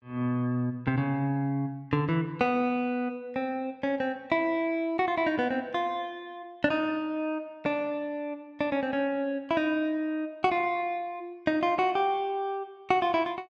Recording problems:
none

